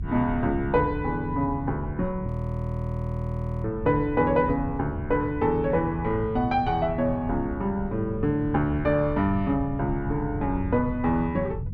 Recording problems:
electrical hum; 50 Hz, harmonics up to 400 Hz, SNR 18 dB
low-frequency rumble; below 130 Hz, SNR 9 dB
frozen audio; at 2.5 s for 1.5 s

